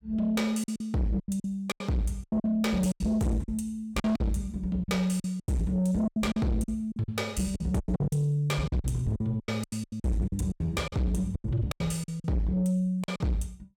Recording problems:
distorted audio; soft clipping, signal-to-distortion ratio 7 dB
packet loss; 15% of the sound replaced, filled with silence

